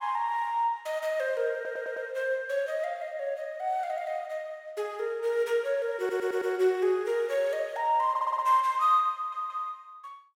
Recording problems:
stutter; 4 times, first at 1.5 s

